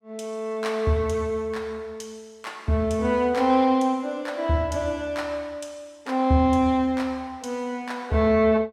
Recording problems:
none

